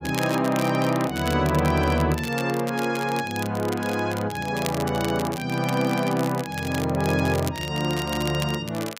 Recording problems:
crackle; vinyl, SNR 13 dB

